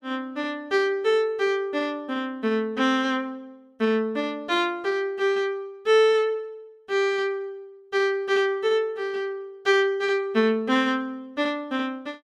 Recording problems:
none

